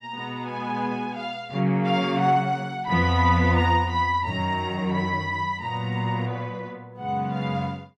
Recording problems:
none

